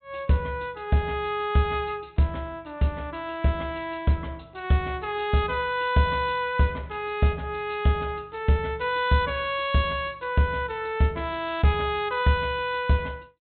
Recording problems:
low-pass filter; nothing above 4 kHz

